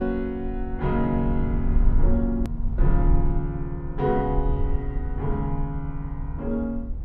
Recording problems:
low-frequency rumble; below 54 Hz, SNR 1 dB
click at an edit; at 2.5 s

